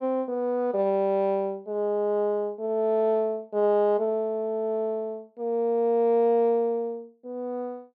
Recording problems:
none

